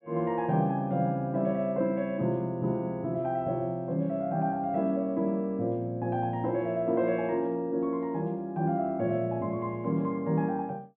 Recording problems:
treble missing; nothing above 4 kHz

